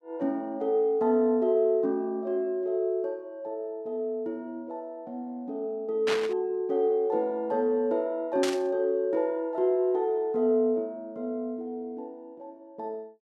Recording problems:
burst of static; at 6 s and at 8.5 s; peak +1 dB vs average level

